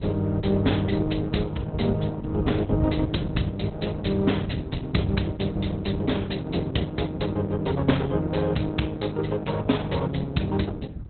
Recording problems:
lossy codec; Opus, log-spectral distance 4 dB, nothing above 4.1 kHz
rumble; below 130 Hz, SNR 6 dB

